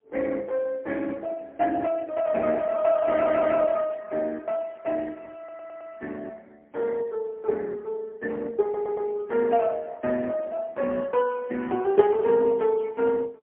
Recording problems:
phone line; 220 Hz to 3.8 kHz, AMR-NB, then MP3
stutter; at 3 s, at 5.5 s and at 8.5 s

